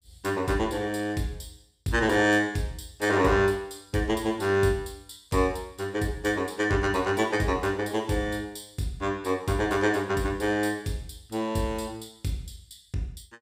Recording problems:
none

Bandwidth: 15.5 kHz